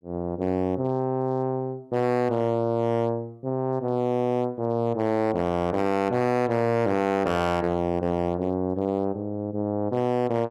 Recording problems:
distortion; hard clipping, signal-to-distortion ratio 11 dB

